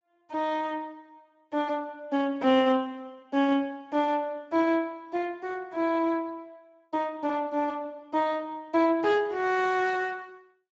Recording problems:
lossy codec; Speex, log-spectral distance 2 dB

